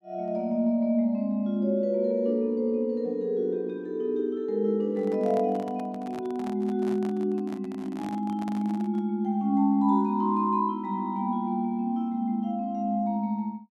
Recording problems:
microphone handling noise; from 5 to 9 s; peak -11 dB vs average level

